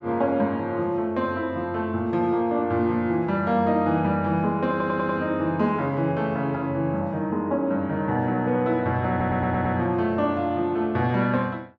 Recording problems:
audio stuttering; at 4.5 s and at 9 s

